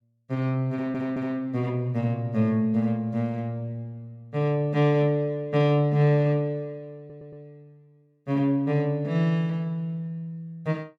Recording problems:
stutter; at 0.5 s and at 7 s

